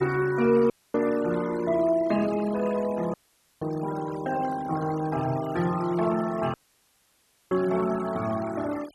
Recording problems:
denoising artefacts; signal-to-artefact ratio 17 dB
dropout; at 0.5 s, at 3 s and at 6.5 s for 1 s

